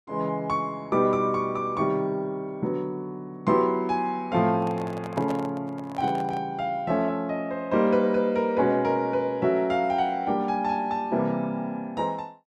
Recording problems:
handling noise; from 4.5 to 6.5 s; peak -5 dB vs average level

